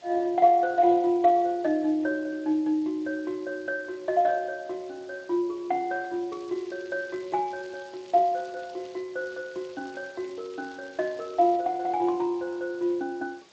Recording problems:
lossy codec; Speex, log-spectral distance 8 dB
background hiss; SNR 27 dB
crackling; from 6.5 to 9 s and from 9 to 12 s; loose cable, SNR 27 dB

